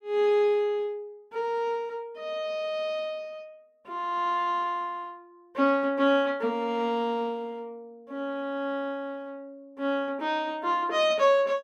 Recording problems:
none

